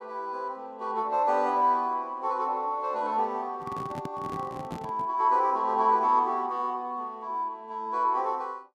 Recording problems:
microphone handling noise; from 3.5 to 5 s; peak -5 dB vs average level

